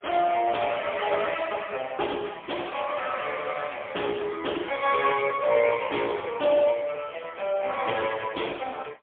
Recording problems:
phone line; 260 Hz to 3.3 kHz, AMR-NB, then MP3

